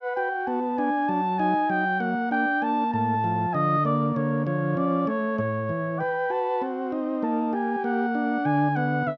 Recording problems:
none

